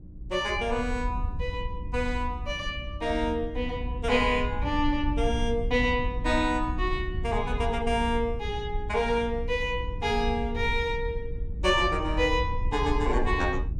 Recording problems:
hum; 60 Hz, harmonics up to 360 Hz, SNR 17 dB
wind on the microphone; below 74 Hz, SNR 6 dB

